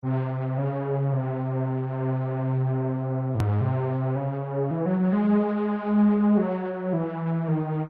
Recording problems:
lossy compression; MP2, log-spectral distance 2 dB, nothing above 13.1 kHz
hard cut with a click; at 3.5 s

